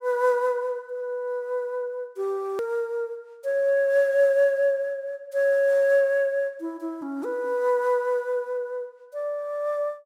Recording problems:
hard cut with a click; at 2.5 s

